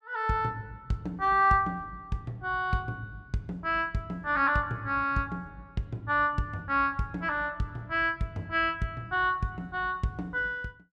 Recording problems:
none

